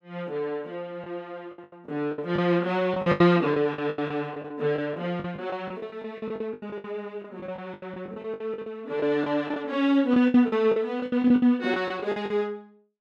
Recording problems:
lost packets; 16% of the sound replaced, filled with the last packet

